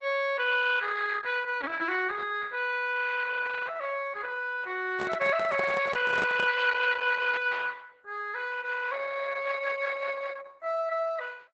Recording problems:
lossy codec; Opus, log-spectral distance 5 dB, nothing above 7.6 kHz
handling noise; from 5 to 6.5 s; peak +1 dB vs average level

